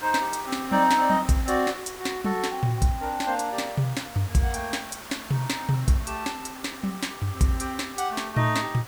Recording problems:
background hiss; SNR 14 dB

